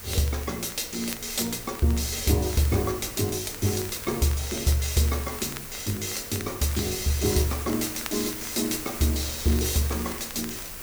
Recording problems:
hiss; SNR 9 dB
wind noise; below 300 Hz, SNR 21 dB
crackle; vinyl, SNR 18 dB

